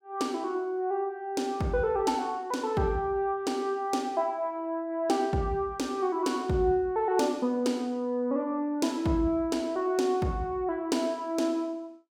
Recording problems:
none

